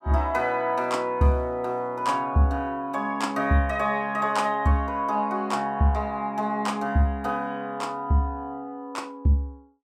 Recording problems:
none

